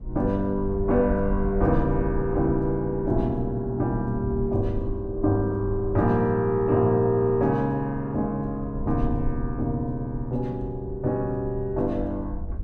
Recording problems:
low-frequency rumble; below 74 Hz, SNR 10 dB

